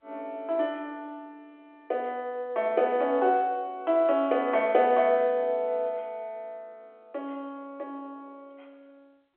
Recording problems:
phone line; 280 Hz to 3.4 kHz, G.711

